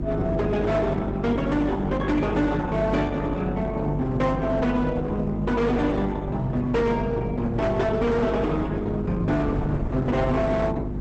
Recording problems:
lossy compression; Opus, log-spectral distance 2 dB, nothing above 8 kHz
distorted audio; hard clipping, signal-to-distortion ratio 10 dB
electrical hum; 50 Hz, harmonics up to 350 Hz, SNR 6 dB
wind on the microphone; below 330 Hz, SNR 13 dB

